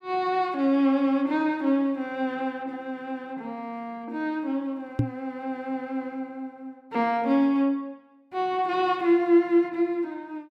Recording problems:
knock on the microphone; at 5 s; peak +6 dB vs average level

